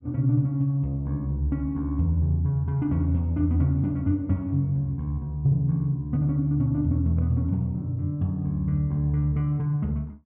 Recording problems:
none

